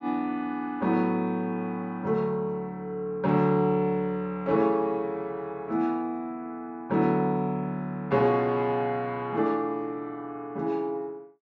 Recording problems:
treble cut off; nothing above 8 kHz

